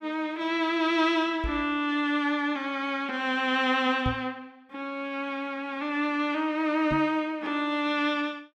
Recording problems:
microphone bump; at 1.5 s, at 4 s and at 7 s; peak 0 dB vs average level

